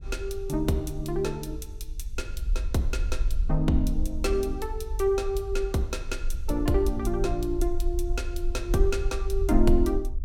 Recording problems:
low-frequency rumble; below 50 Hz, strongest tone 22 Hz, SNR 4 dB

